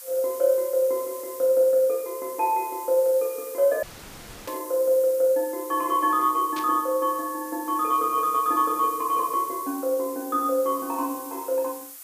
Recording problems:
background hiss; SNR 15 dB
dropout; at 4 s for 0.5 s
static burst; at 4.5 s and at 6.5 s; peak -9 dB vs average level

